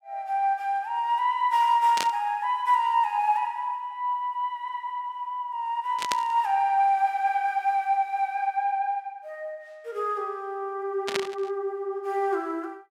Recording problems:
static burst; at 2 s, at 6 s and at 11 s; peak +2 dB vs average level

